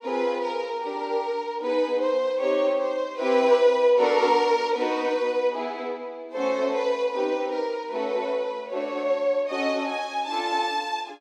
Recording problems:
none

